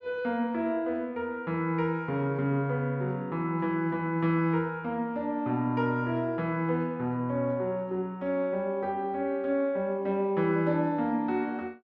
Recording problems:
none

